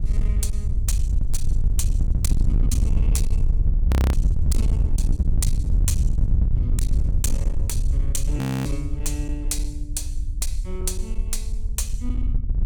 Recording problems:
distorted audio; hard clipping, uneven, signal-to-distortion ratio 7 dB
low-frequency rumble; below 72 Hz, SNR -7 dB
frozen audio; at 4 s and at 8.5 s

